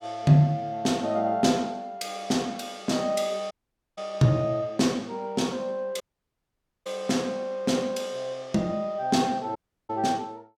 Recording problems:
dropout; at 3.5 s, at 6 s for 1 s and at 9.5 s

